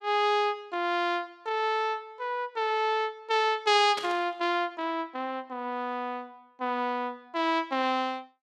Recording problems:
burst of static; at 4 s; peak -3 dB vs average level

